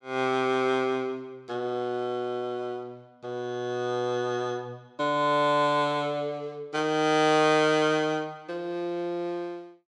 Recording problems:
none

